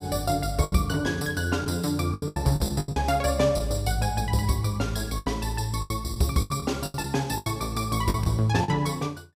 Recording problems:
lost packets; 11% of the sound replaced, filled with the last packet

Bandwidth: 15.5 kHz